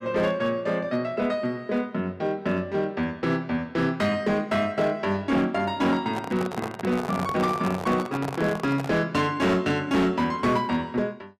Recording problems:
distorted audio; hard clipping, signal-to-distortion ratio 12 dB
microphone handling noise; from 6 to 9 s; peak -2 dB vs average level

